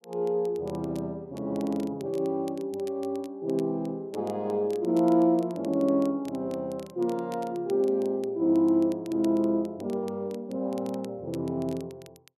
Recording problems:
crackling; vinyl, SNR 26 dB

